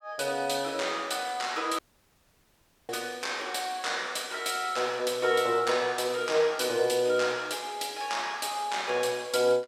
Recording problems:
audio cutting out; at 2 s for 1 s

